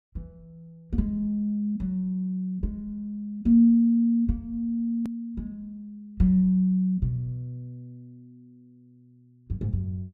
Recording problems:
hard cut with a click; at 5 s

